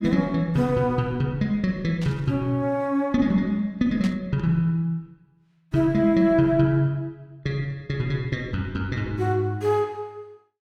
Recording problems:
static burst; at 2 s and at 4 s; peak -9 dB vs average level

